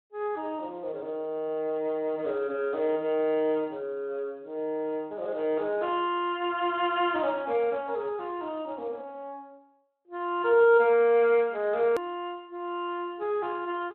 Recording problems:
phone line; 220 Hz to 3.3 kHz, Speex
hard cut with a click; at 12 s

